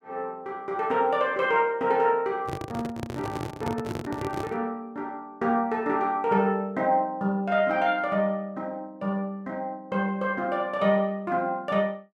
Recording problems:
handling noise; from 2.5 to 4.5 s; peak -1 dB vs average level

